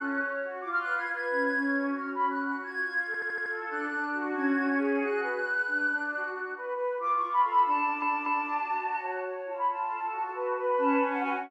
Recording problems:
audio stuttering; at 3 s and at 8 s

